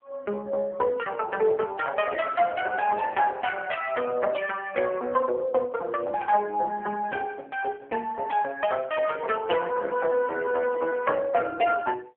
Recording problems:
phone line; 340 Hz to 2.9 kHz, AMR-NB

